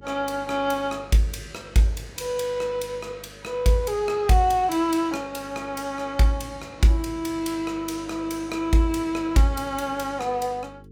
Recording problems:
mains hum; 50 Hz, harmonics up to 450 Hz, SNR 23 dB

